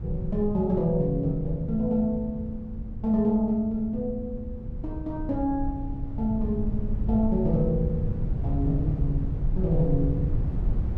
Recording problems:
rumble; below 110 Hz, SNR 5 dB

